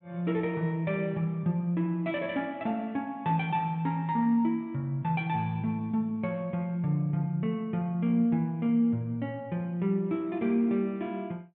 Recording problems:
treble missing; nothing above 4 kHz

